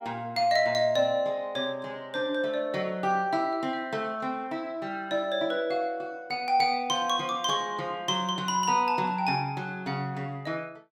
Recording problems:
none

